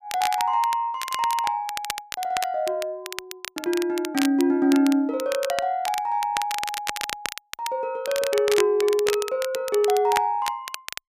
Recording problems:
crackling; vinyl, SNR 9 dB

